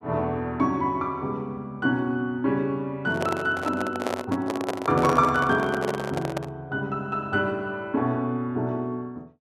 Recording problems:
microphone handling noise; from 3 to 6.5 s; peak +3 dB vs average level

